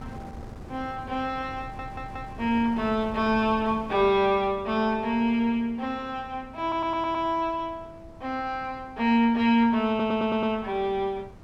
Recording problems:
wind on the microphone; below 360 Hz, SNR 19 dB
stutter; at 1.5 s, at 6.5 s and at 10 s

